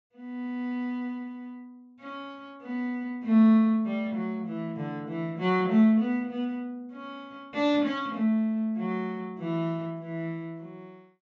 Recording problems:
treble missing; nothing above 8 kHz

